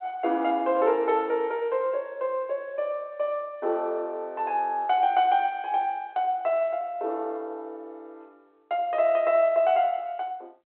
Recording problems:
telephone audio; 300 Hz to 3.3 kHz, G.726

